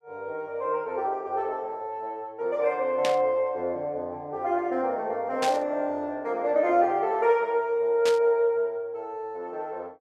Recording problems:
burst of static; at 3 s, at 5.5 s and at 8 s; peak 0 dB vs average level

